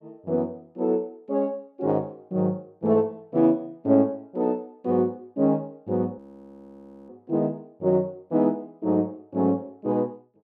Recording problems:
audio freezing; at 6 s for 1 s

